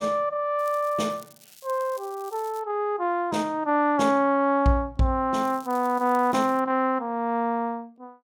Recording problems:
crackle; from 0.5 to 2.5 s and from 5.5 to 6.5 s; loose cable, SNR 24 dB

